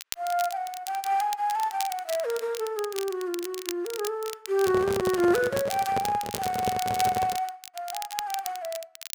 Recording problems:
crackle; vinyl, SNR 10 dB
handling noise; from 4.5 to 7.5 s; peak +2 dB vs average level

